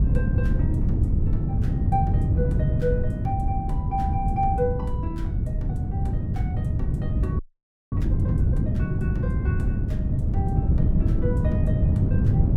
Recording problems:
low-frequency rumble; below 66 Hz, SNR 2 dB
wind on the microphone; below 160 Hz, SNR -8 dB
frozen audio; at 7.5 s for 0.5 s

